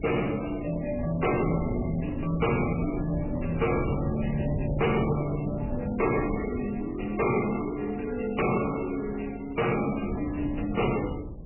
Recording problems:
lossy codec; MP3, log-spectral distance 10 dB, nothing above 2.7 kHz
distortion; hard clipping, uneven, signal-to-distortion ratio 10 dB
wind on the microphone; below 250 Hz, SNR 7 dB

